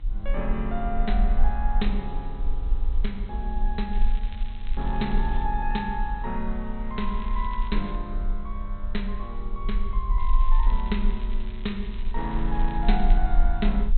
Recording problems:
treble missing; nothing above 4.1 kHz
hum; 50 Hz, harmonics up to 600 Hz, SNR 16 dB
background hiss; SNR 26 dB
low-frequency rumble; below 40 Hz, strongest tone 18 Hz, SNR -2 dB
crackling; from 4 to 5.5 s, at 7 s and from 10 to 13 s; loose cable, SNR 17 dB

